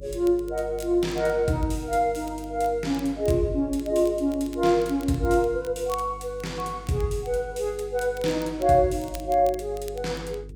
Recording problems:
electrical hum; 50 Hz, harmonics up to 450 Hz, SNR 18 dB
crackle; vinyl, SNR 24 dB

